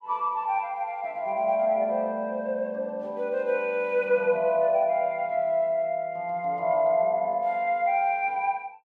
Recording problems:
none

